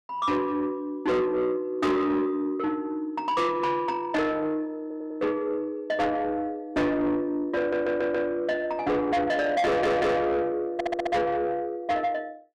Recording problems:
distortion; soft clipping, signal-to-distortion ratio 7 dB
stutter; 4 times, first at 5 s

